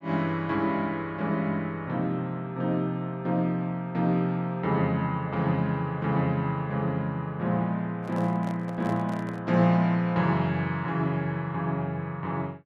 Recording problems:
handling noise; from 8 to 9.5 s; peak -8 dB vs average level

